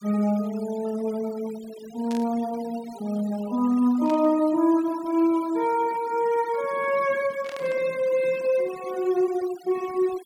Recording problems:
noise reduction artefacts; signal-to-artefact ratio 20 dB
static burst; at 2 s, at 4 s and at 7.5 s; peak -11 dB vs average level

